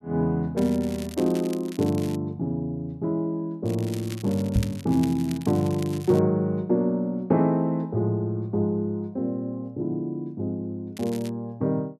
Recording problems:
crackling; from 0.5 to 2 s, from 3.5 to 6 s and at 11 s; loose cable, SNR 18 dB
microphone thump; at 4.5 s; peak +6 dB vs average level

